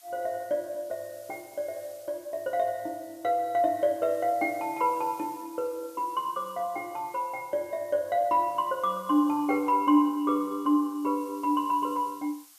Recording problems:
background hiss; SNR 23 dB

